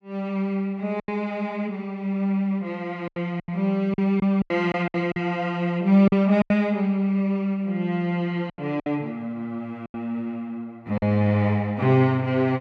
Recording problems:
packet loss; 7% of the sound replaced, filled with silence

